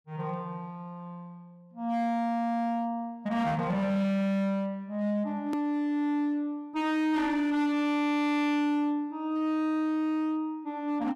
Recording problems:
distortion; hard clipping, signal-to-distortion ratio 10 dB
click at an edit; at 5.5 s

